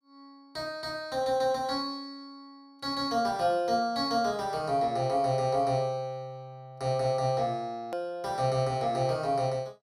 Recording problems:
edit click; at 8 s

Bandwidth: 15.5 kHz